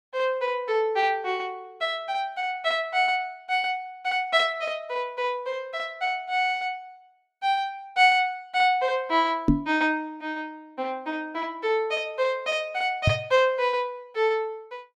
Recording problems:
microphone bump; at 9.5 s and at 13 s; peak +9 dB vs average level

